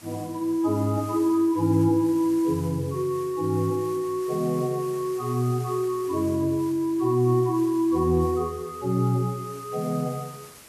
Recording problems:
hiss; slope -2 dB per octave, SNR 21 dB

